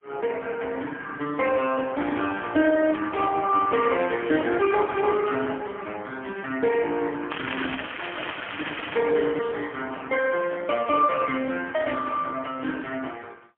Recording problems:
phone line; 190 Hz to 3.3 kHz, AMR-NB, then MP3
crackle; from 7.5 to 9 s; loose cable, SNR 7 dB

